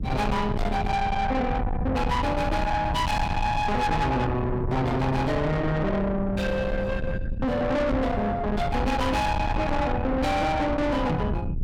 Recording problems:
distorted audio; soft clipping, signal-to-distortion ratio 7 dB
low-frequency rumble; below 640 Hz, SNR 4 dB
knock on the microphone; at 8 s and at 11 s; peak +3 dB vs average level

